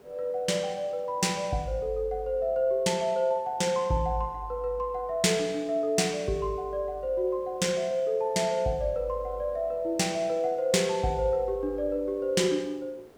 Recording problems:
hiss; SNR 26 dB

